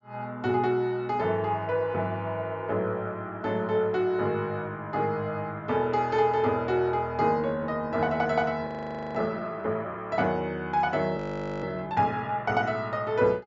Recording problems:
low-pass filter; nothing above 8 kHz
frozen audio; at 8.5 s and at 11 s

